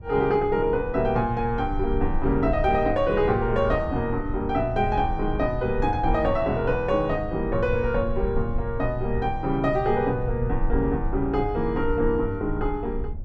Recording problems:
low-frequency rumble; below 66 Hz, SNR 9 dB

